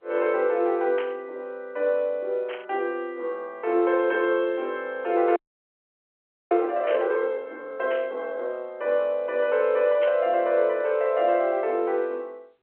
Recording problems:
phone line; 300 Hz to 3.6 kHz, G.711
burst of static; 5 times, first at 1 s; peak -8 dB vs average level
frozen audio; at 5.5 s for 1 s

